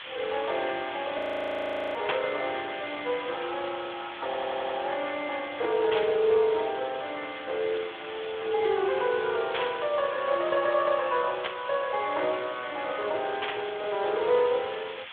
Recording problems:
phone line; 320 Hz to 4 kHz, Speex
background hiss; SNR 12 dB
audio freezing; at 1 s for 1 s
static burst; 5 times, first at 2 s; peak +3 dB vs average level
stutter; at 4.5 s

